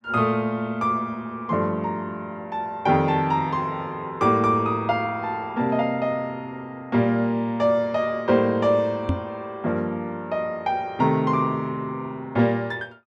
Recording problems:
microphone bump; at 9 s; peak +4 dB vs average level

